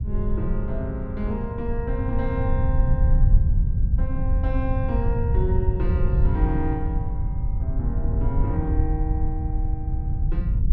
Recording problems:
rumble; below 92 Hz, SNR -7 dB

